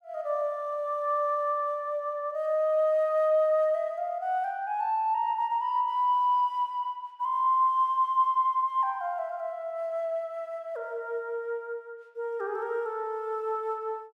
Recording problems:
none

